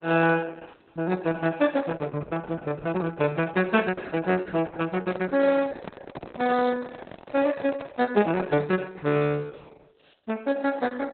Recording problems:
lossy compression; Opus, log-spectral distance 4 dB, nothing above 4 kHz
microphone handling noise; from 5 to 8 s; peak -1 dB vs average level

